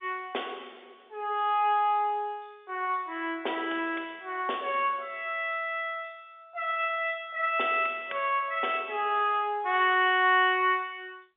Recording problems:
telephone audio; 320 Hz to 3.6 kHz, G.711

